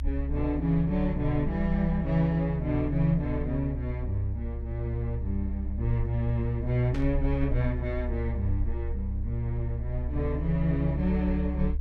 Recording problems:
rumble; below 68 Hz, strongest tone 66 Hz, SNR 4 dB
static burst; at 7 s; peak -9 dB vs average level

